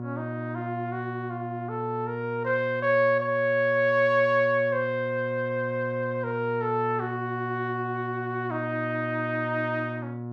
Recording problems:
electrical hum; 60 Hz, harmonics up to 1.1 kHz, SNR 9 dB

